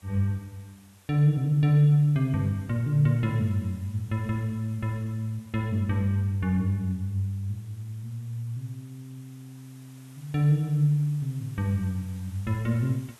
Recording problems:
hiss; slope -1 dB per octave, SNR 29 dB

